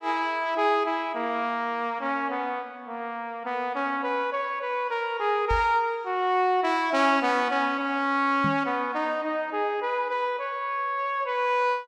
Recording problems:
microphone thump; at 5.5 s and at 8.5 s; peak 0 dB vs average level

